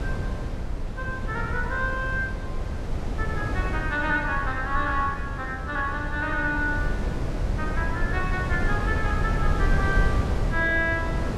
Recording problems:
wind noise; below 160 Hz, SNR 1 dB

